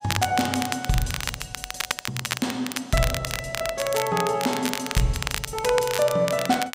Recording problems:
crackle; vinyl, SNR 5 dB

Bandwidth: 15.5 kHz